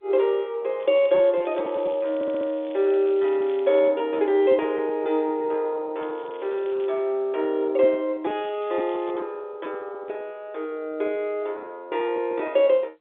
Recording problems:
telephone audio; 280 Hz to 3.7 kHz, G.711
lost packets; 9% of the sound replaced, filled with repeated pitch periods
crackling; from 1 to 4 s, at 6 s and at 8.5 s; loose cable, SNR 27 dB
stutter; at 2 s

